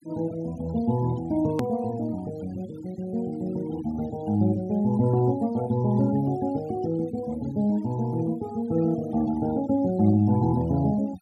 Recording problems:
denoising artefacts; signal-to-artefact ratio 22 dB
click at an edit; at 1.5 s

